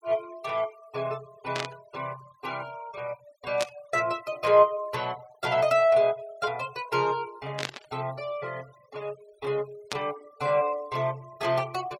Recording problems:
noise reduction artefacts; signal-to-artefact ratio 22 dB
static burst; 4 times, first at 1.5 s; peak +1 dB vs average level

